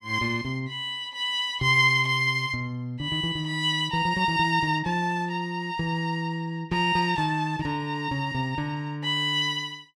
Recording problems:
none

